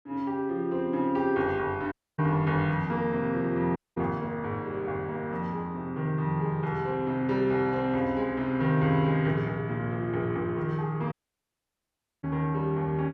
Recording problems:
dropout; at 2 s, at 4 s and at 11 s for 1 s

